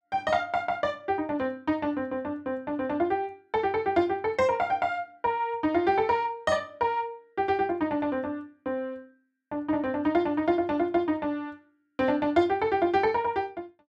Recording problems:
none

